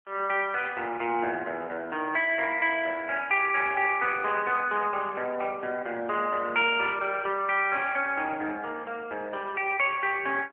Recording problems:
telephone audio; 340 Hz to 3.3 kHz, AMR-NB

